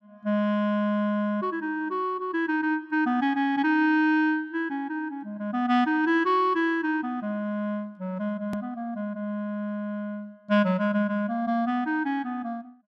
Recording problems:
edit click; at 8.5 s

